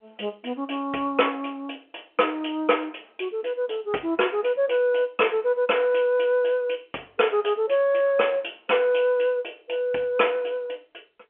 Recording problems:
phone line; 300 Hz to 3.3 kHz, G.711

